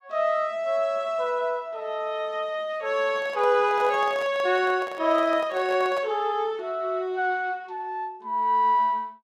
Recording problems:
microphone handling noise; from 3 to 6 s; peak -8 dB vs average level

